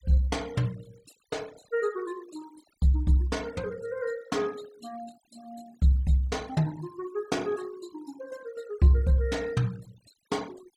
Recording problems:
denoising artefacts; signal-to-artefact ratio 23 dB

